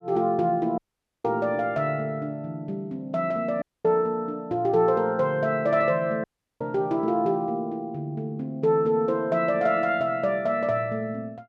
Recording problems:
dropout; at 1 s, at 3.5 s and at 6 s

